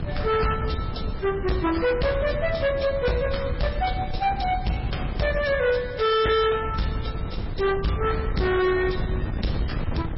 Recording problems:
codec artefacts; MP3, log-spectral distance 4 dB, nothing above 5.5 kHz
distorted audio; hard clipping, uneven, signal-to-distortion ratio 8 dB
wind on the microphone; below 190 Hz, SNR 7 dB

